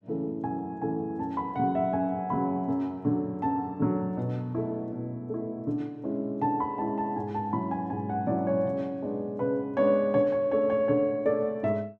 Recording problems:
none

